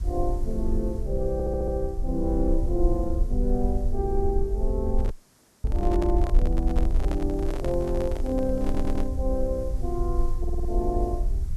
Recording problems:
background hiss; SNR 25 dB
rumble; below 56 Hz, SNR 0 dB
stutter; at 1.5 s, at 8.5 s and at 10 s
handling noise; from 5 to 9 s; peak -2 dB vs average level
dropout; at 5 s for 0.5 s

